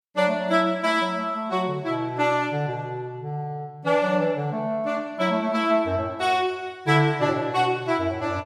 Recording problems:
none

